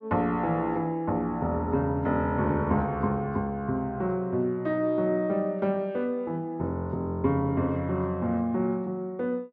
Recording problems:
none

